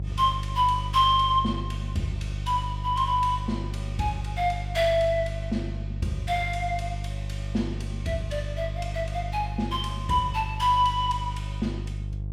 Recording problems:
electrical hum; 50 Hz, harmonics up to 350 Hz, SNR 6 dB

